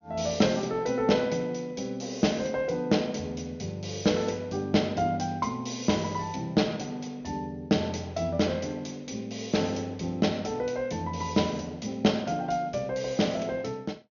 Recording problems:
treble missing; nothing above 6.7 kHz

